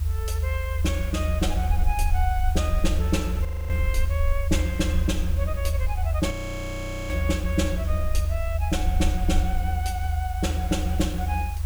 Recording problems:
background hiss; SNR 15 dB
low-frequency rumble; below 80 Hz, SNR -3 dB
audio freezing; at 3.5 s and at 6.5 s for 1 s

